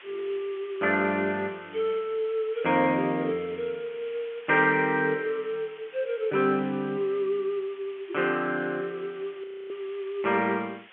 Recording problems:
phone line; 220 Hz to 3.4 kHz, G.711
hiss; SNR 21 dB
frozen audio; at 9.5 s

